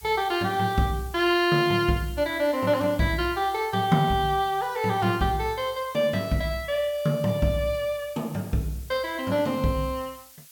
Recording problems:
hiss; slope +5 dB per octave, SNR 22 dB

